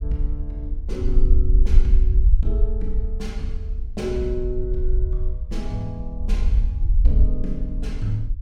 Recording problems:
low-frequency rumble; below 50 Hz, strongest tone 22 Hz, SNR -6 dB

